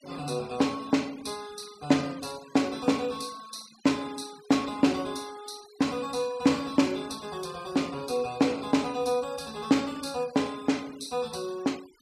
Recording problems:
denoising artefacts; signal-to-artefact ratio 21 dB

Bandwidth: 14.5 kHz